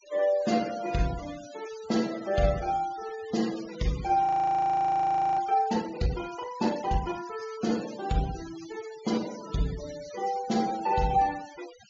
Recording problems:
treble cut off; nothing above 7.3 kHz
denoising artefacts; signal-to-artefact ratio 17 dB
frozen audio; at 4.5 s for 1 s

